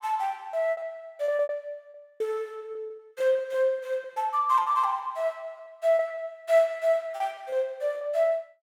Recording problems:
lost packets; 13% of the sound replaced, filled with repeated pitch periods

